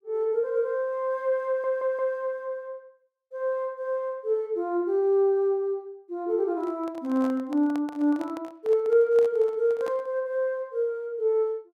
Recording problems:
audio stuttering; at 1.5 s
handling noise; from 6.5 to 10 s; peak -10 dB vs average level

